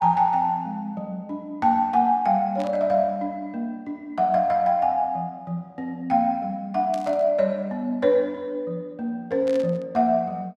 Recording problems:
burst of static; at 2.5 s, at 7 s and at 9.5 s; peak -13 dB vs average level

